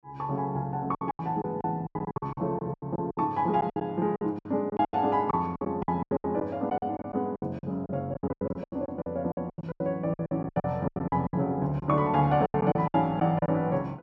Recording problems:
lost packets; 19% of the sound replaced, filled with silence

